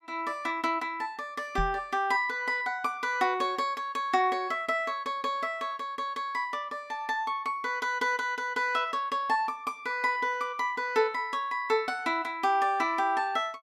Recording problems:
microphone thump; at 1.5 s; peak 0 dB vs average level

